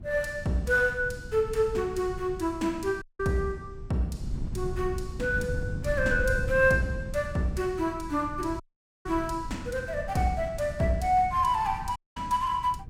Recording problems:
wind on the microphone; below 130 Hz, SNR 10 dB
audio cutting out; at 3 s, at 8.5 s and at 12 s

